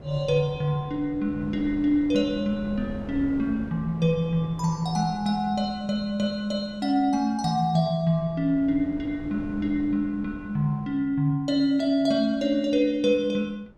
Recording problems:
wind noise; below 370 Hz, SNR 17 dB

